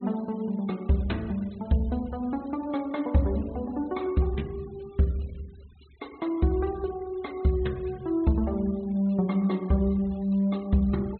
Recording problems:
treble cut off; nothing above 4.1 kHz
noise reduction artefacts; signal-to-artefact ratio 27 dB

